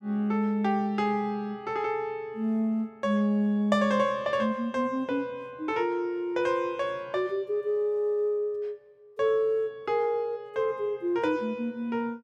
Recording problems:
none

